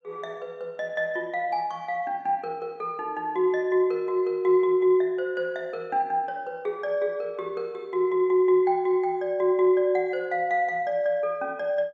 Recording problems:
none

